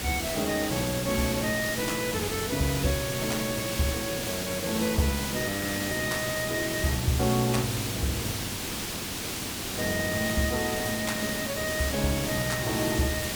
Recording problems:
hiss; SNR 2 dB
audio freezing; at 5.5 s and at 8.5 s for 1 s

